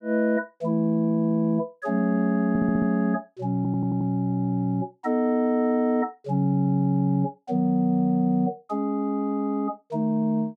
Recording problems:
stutter; at 2.5 s and at 3.5 s

